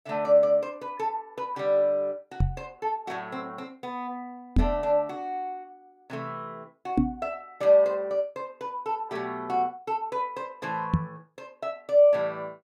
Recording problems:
microphone thump; 4 times, first at 2.5 s; peak +8 dB vs average level

